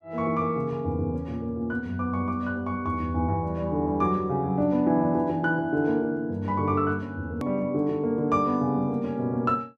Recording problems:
hard cut with a click; at 7.5 s

